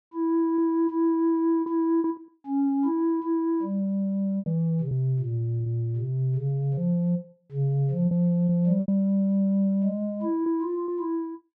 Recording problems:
lost packets; 5% of the sound replaced, filled with repeated pitch periods

